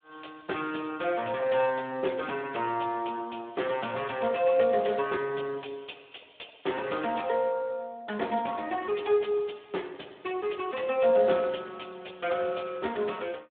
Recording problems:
phone line; 240 Hz to 3.5 kHz, Speex

